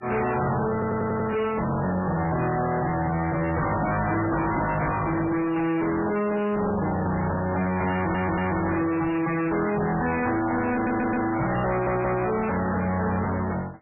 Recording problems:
codec artefacts; MP3, log-spectral distance 5 dB, nothing above 2.7 kHz
distortion; soft clipping, signal-to-distortion ratio 6 dB
audio stuttering; 4 times, first at 0.5 s

